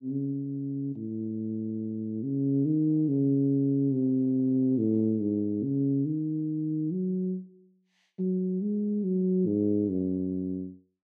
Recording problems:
none

